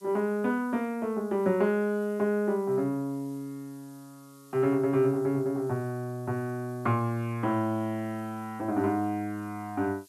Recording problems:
hiss; slope +5 dB per octave, SNR 28 dB

